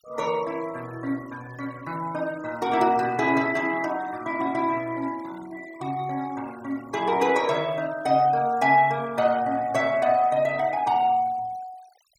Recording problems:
denoising artefacts; signal-to-artefact ratio 23 dB

